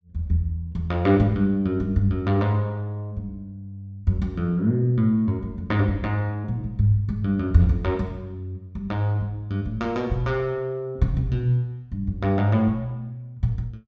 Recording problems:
treble cut off; nothing above 8 kHz

